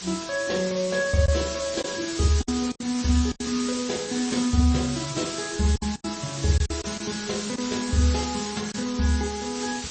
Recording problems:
codec artefacts; MP3, then AAC, log-spectral distance 17 dB, nothing above 8.2 kHz
hiss; SNR 7 dB
packet loss; 5% of the sound replaced, filled with silence

